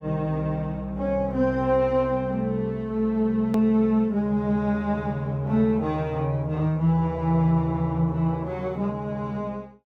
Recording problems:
edit click; at 3.5 s

